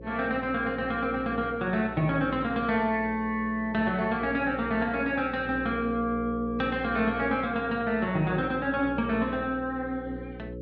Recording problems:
hum; 60 Hz, harmonics up to 540 Hz, SNR 13 dB

